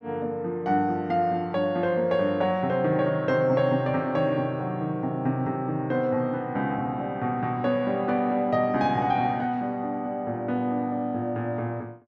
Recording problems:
none

